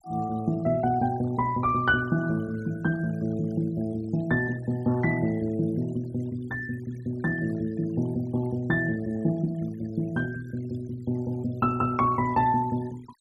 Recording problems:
denoising artefacts; signal-to-artefact ratio 23 dB

